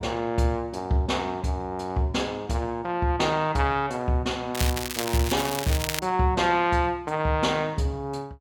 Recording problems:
crackle; from 4.5 to 6 s; loose cable, SNR 5 dB

